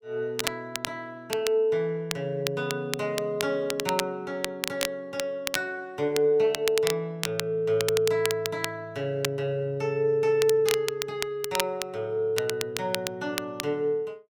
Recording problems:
crackle; vinyl, SNR 6 dB

